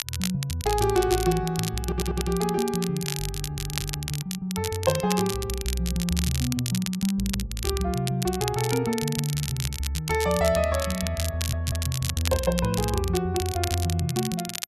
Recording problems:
crackle; vinyl, SNR 6 dB
stutter; at 2 s, at 3.5 s and at 11 s

